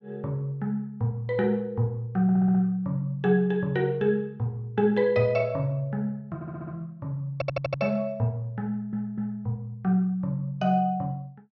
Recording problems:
stutter; 4 times, first at 2 s

